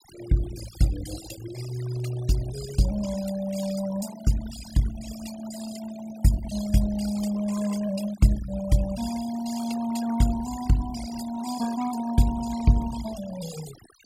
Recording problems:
denoising artefacts; signal-to-artefact ratio 12 dB

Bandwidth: 16 kHz